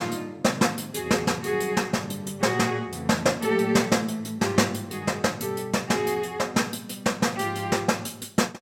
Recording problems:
none

